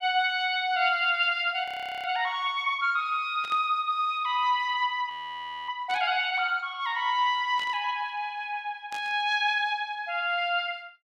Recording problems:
frozen audio; at 1.5 s and at 5 s for 0.5 s
static burst; 4 times, first at 3.5 s; peak -11 dB vs average level

